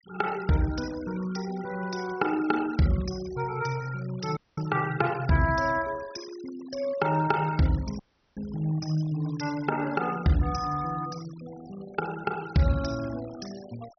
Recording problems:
treble cut off; nothing above 6 kHz
noise reduction artefacts; signal-to-artefact ratio 18 dB
audio cutting out; at 4.5 s and at 8 s

